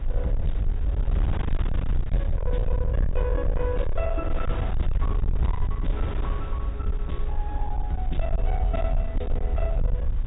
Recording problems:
treble cut off; nothing above 4 kHz
distorted audio; hard clipping, uneven, signal-to-distortion ratio 6 dB
low-frequency rumble; below 64 Hz, SNR -6 dB
wind on the microphone; below 690 Hz, SNR 6 dB

